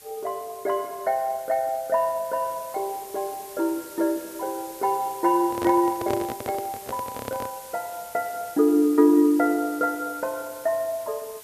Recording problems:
background hiss; slope 0 dB per octave, SNR 17 dB
microphone handling noise; from 5.5 to 7.5 s; peak -3 dB vs average level

